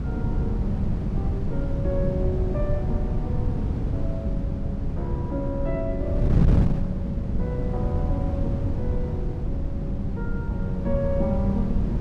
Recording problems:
wind noise; below 160 Hz, SNR -5 dB

